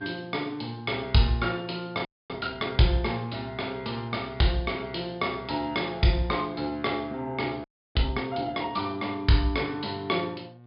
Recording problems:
low-pass filter; nothing above 5 kHz
hum; 60 Hz, harmonics up to 1.1 kHz, SNR 23 dB
audio freezing; at 2 s and at 7.5 s

